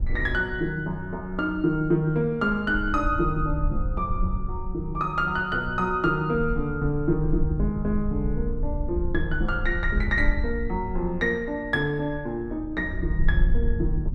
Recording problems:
low-frequency rumble; below 60 Hz, SNR 5 dB

